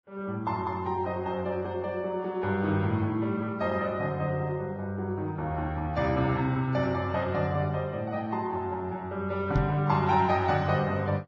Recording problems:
lossy codec; Vorbis, log-spectral distance 2 dB
microphone thump; at 9.5 s; peak +4 dB vs average level

